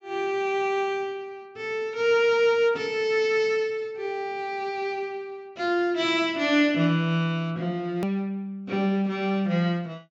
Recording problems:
low-pass filter; nothing above 8 kHz
click at an edit; at 8 s

